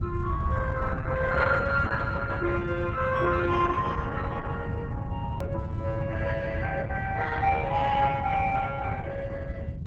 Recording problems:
lossy codec; Opus, log-spectral distance 3 dB, nothing above 7.8 kHz
low-frequency rumble; below 140 Hz, SNR 3 dB
click at an edit; at 5.5 s

